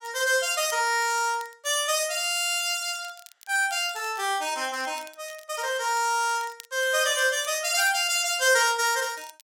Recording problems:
crackle; vinyl, SNR 24 dB

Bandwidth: 16.5 kHz